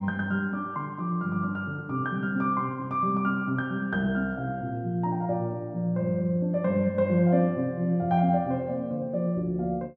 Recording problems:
none

